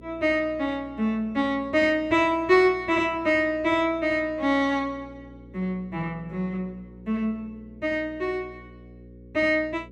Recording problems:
hum; 60 Hz, harmonics up to 540 Hz, SNR 22 dB

